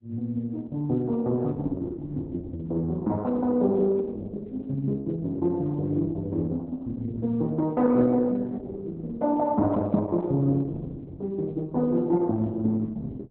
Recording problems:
lossy codec; Opus, log-spectral distance 2 dB

